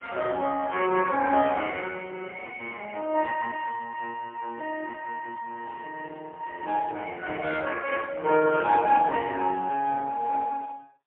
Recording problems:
telephone audio; 220 Hz to 2.8 kHz, AMR-NB, then MP3

